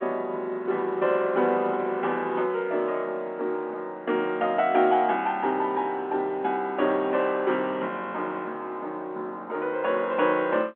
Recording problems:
phone line; 190 Hz to 3.4 kHz, G.711

